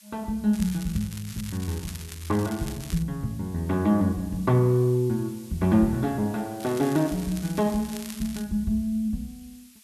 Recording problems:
background hiss; slope +6 dB per octave, SNR 23 dB
crackling; from 0.5 to 3 s and from 6.5 to 8.5 s; loose cable, SNR 16 dB

